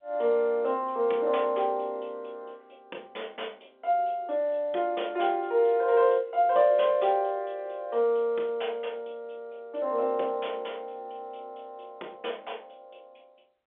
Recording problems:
phone line; 300 Hz to 3.7 kHz, G.711

